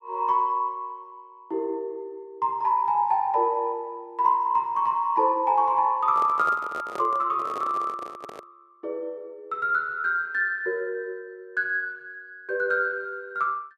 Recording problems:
handling noise; from 6 to 8.5 s; peak -7 dB vs average level

